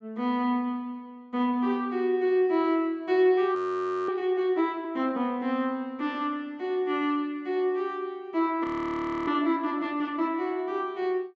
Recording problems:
treble cut off; nothing above 8 kHz
frozen audio; at 3.5 s for 0.5 s and at 8.5 s for 0.5 s

